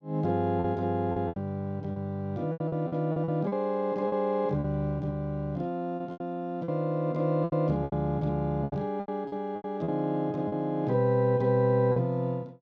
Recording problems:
packet loss; 10% of the sound replaced, filled with repeated pitch periods

